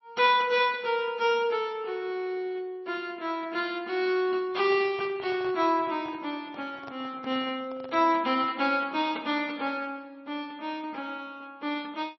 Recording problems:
codec artefacts; MP3, log-spectral distance 2 dB, nothing above 4.8 kHz
microphone handling noise; from 4.5 to 8.5 s; peak -12 dB vs average level

